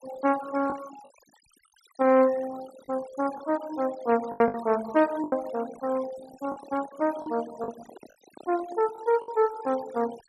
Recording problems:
denoising artefacts; signal-to-artefact ratio 18 dB
packet loss; 6% of the sound replaced, filled with the last packet
microphone handling noise; from 6.5 to 9 s; peak -17 dB vs average level

